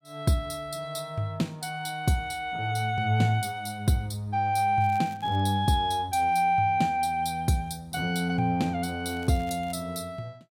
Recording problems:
crackle; at 5 s and at 9 s; loose cable, SNR 27 dB

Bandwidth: 16.5 kHz